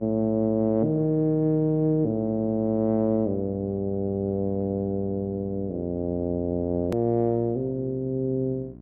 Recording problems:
hum; 60 Hz, harmonics up to 720 Hz, SNR 19 dB
hard cut with a click; at 7 s

